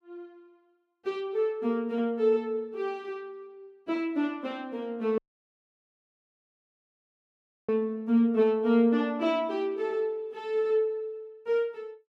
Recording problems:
dropout; at 5 s for 2.5 s

